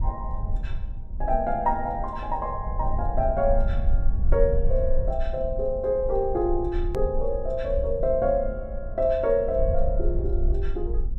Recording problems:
rumble; below 54 Hz, strongest tone 18 Hz, SNR 4 dB
click at an edit; at 7 s

